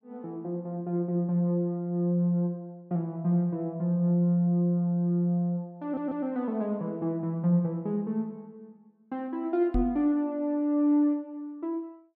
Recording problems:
stutter; at 6 s
microphone bump; at 9.5 s; peak 0 dB vs average level

